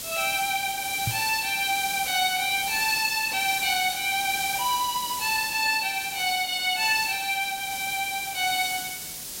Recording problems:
background hiss; SNR 7 dB
microphone thump; at 1 s; peak -1 dB vs average level

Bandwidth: 16 kHz